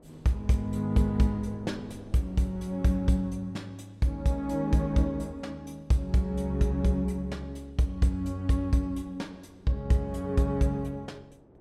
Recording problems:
wind noise; below 430 Hz, SNR 26 dB

